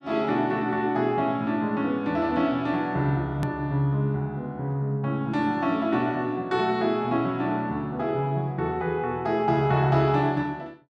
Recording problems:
hard cut with a click; at 3.5 s

